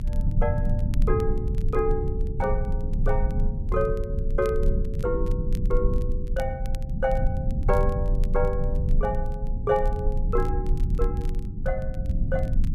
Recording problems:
low-frequency rumble; below 82 Hz, strongest tone 26 Hz, SNR -2 dB
crackle; vinyl, SNR 25 dB

